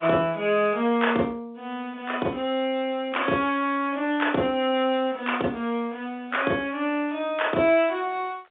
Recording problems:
phone line; 300 Hz to 3.6 kHz, G.711

